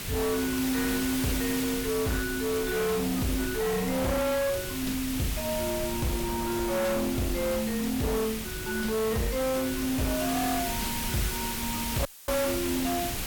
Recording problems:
distorted audio; hard clipping, signal-to-distortion ratio 8 dB
hum; 50 Hz, harmonics up to 550 Hz, SNR 21 dB
hiss; slope 0 dB per octave, SNR 4 dB
low-frequency rumble; below 200 Hz, SNR 13 dB
dropout; at 12 s; filled with static

